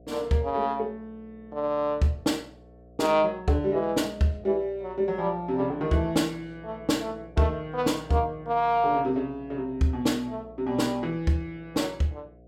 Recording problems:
electrical hum; 60 Hz, harmonics up to 720 Hz, SNR 23 dB

